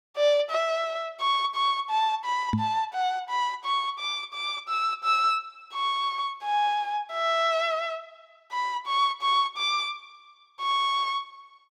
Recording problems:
microphone bump; at 2.5 s; peak +4 dB vs average level

